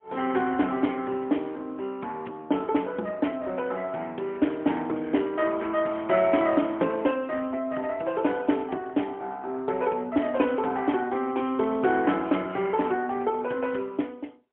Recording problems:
phone line; 220 Hz to 3.3 kHz, AMR-NB, then MP3

